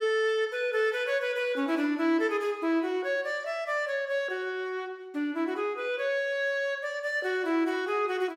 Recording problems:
none

